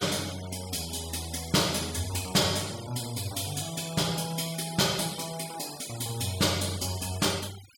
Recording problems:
denoising artefacts; signal-to-artefact ratio 14 dB

